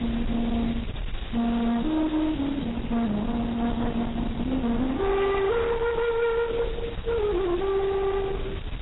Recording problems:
lossy codec; Opus, then AAC, log-spectral distance 10 dB, nothing above 3.9 kHz
distorted audio; hard clipping, uneven, signal-to-distortion ratio 7 dB
hiss; SNR 18 dB
rumble; below 210 Hz, SNR 10 dB
wind noise; below 580 Hz, SNR 22 dB

